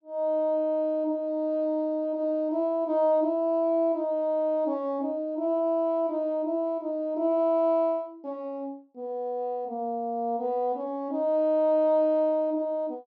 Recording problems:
none

